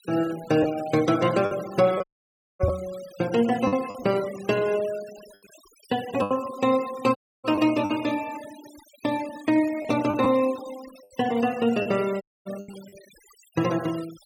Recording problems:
noise reduction artefacts; signal-to-artefact ratio 19 dB
packet loss; 5% of the sound replaced, filled with the last packet
audio cutting out; at 2 s for 0.5 s, at 7 s and at 12 s
microphone bump; at 2.5 s; peak +5 dB vs average level

